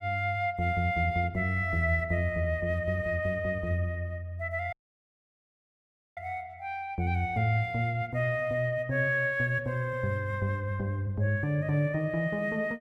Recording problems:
dropout; at 4.5 s for 1.5 s

